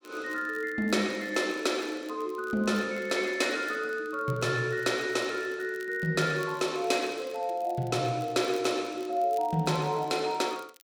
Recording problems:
crackling; vinyl, SNR 26 dB

